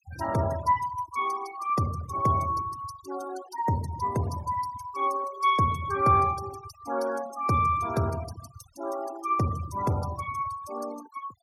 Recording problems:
noise reduction artefacts; signal-to-artefact ratio 16 dB

